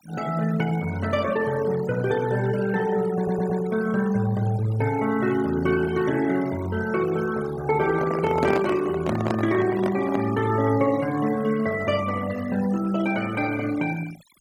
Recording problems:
noise reduction artefacts; signal-to-artefact ratio 16 dB
stutter; at 3 s
handling noise; from 8 to 10 s; peak +2 dB vs average level

